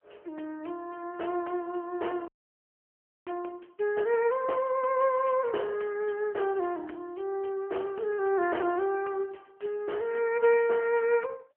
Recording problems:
phone line; 300 Hz to 3.1 kHz, AMR-NB
frozen audio; at 2.5 s for 1 s

